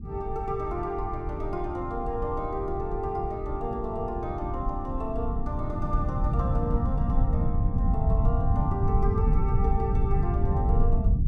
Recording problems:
low-frequency rumble; below 110 Hz, SNR -3 dB

